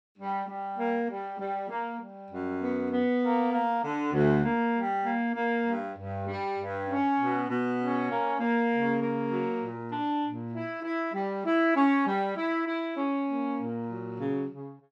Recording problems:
none

